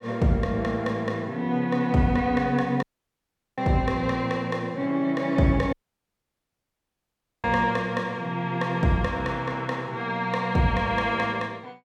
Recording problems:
dropout; at 3 s for 0.5 s and at 5.5 s for 1.5 s

